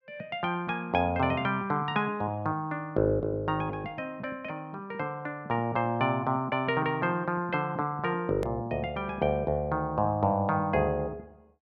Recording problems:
hard cut with a click; at 8.5 s

